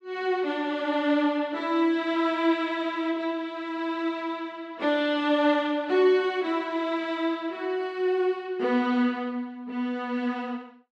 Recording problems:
none

